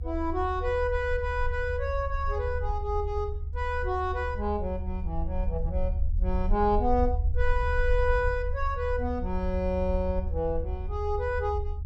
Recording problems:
rumble; below 74 Hz, SNR 3 dB

